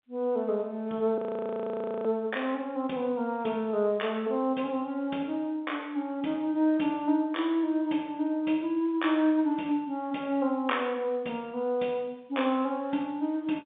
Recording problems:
telephone audio; 220 Hz to 3.6 kHz, G.711
frozen audio; at 1 s for 1 s

